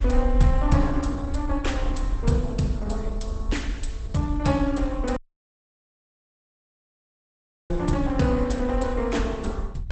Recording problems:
lossy compression; Opus, log-spectral distance 2 dB, nothing above 8.2 kHz
rumble; below 58 Hz, SNR 3 dB
audio cutting out; at 5 s for 2.5 s

